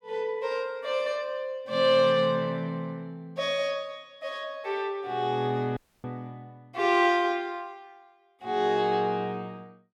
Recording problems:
audio cutting out; at 6 s

